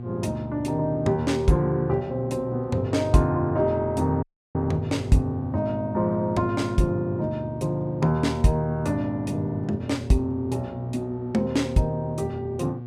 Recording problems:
hum; 60 Hz, harmonics up to 840 Hz, SNR 10 dB
audio cutting out; at 4 s

